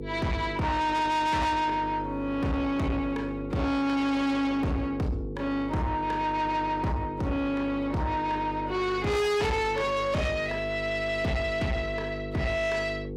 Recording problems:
distortion; soft clipping, signal-to-distortion ratio 8 dB
mains hum; 50 Hz, harmonics up to 600 Hz, SNR 10 dB

